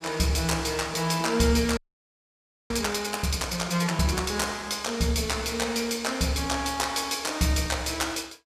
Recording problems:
frozen audio; at 2 s for 1 s

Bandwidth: 15.5 kHz